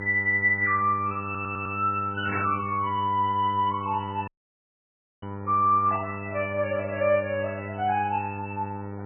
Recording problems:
lossy compression; AAC, then MP3, log-spectral distance 3 dB, nothing above 2.7 kHz
electrical hum; 50 Hz, harmonics up to 1.4 kHz, SNR 10 dB
audio stuttering; at 1.5 s
static burst; at 2.5 s; peak +1 dB vs average level
audio cutting out; at 4.5 s for 1 s

